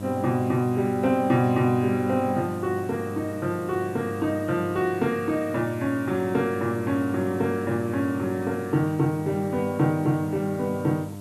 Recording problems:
electrical hum; 50 Hz, harmonics up to 1.3 kHz, SNR 12 dB
background hiss; slope 0 dB per octave, SNR 25 dB

